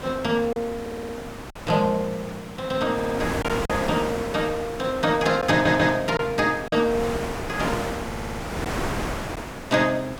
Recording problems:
hiss; slope -2 dB per octave, SNR 25 dB
wind on the microphone; below 1.5 kHz, SNR 8 dB
packet loss; 2% of the sound replaced, filled with silence
stutter; 4 times, first at 1 s

